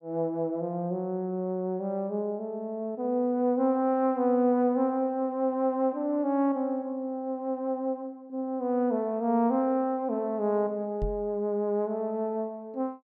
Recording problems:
microphone thump; at 11 s; peak -1 dB vs average level

